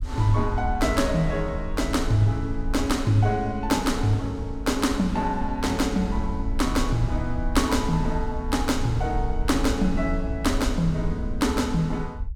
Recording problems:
rumble; below 66 Hz, SNR 7 dB

